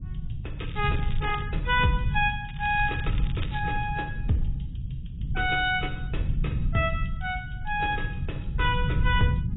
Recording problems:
lossy compression; AAC, log-spectral distance 4 dB, nothing above 3.5 kHz
low-frequency rumble; below 130 Hz, SNR 3 dB
crackling; at 0.5 s and from 2.5 to 3.5 s; loose cable, SNR 17 dB

